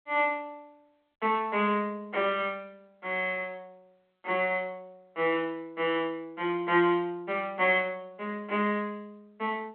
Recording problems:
phone line; 260 Hz to 3.5 kHz, G.726

